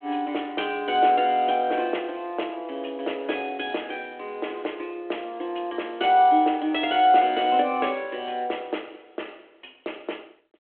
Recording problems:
telephone audio; 260 Hz to 3.4 kHz, G.726

